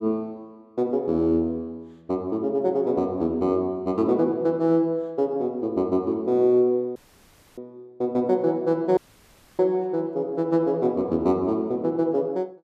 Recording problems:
dropout; at 7 s for 0.5 s and at 9 s for 0.5 s

